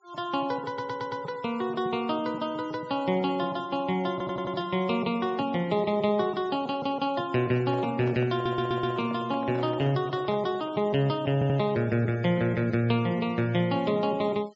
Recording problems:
low-pass filter; nothing above 7.6 kHz
denoising artefacts; signal-to-artefact ratio 24 dB
stutter; 4 times, first at 0.5 s
microphone handling noise; from 7.5 to 11 s; peak -8 dB vs average level

